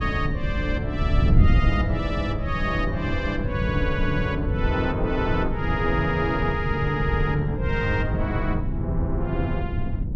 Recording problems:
wind on the microphone; below 130 Hz, SNR 0 dB

